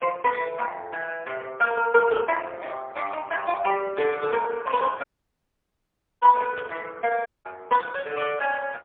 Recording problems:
telephone audio; 370 Hz to 2.6 kHz, AMR-NB, then MP3
audio cutting out; at 5 s for 1 s and at 7.5 s
burst of static; at 6.5 s; peak -9 dB vs average level

